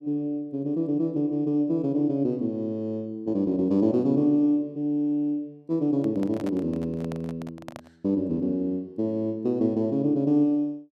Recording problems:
microphone handling noise; from 6 to 8 s; peak -9 dB vs average level

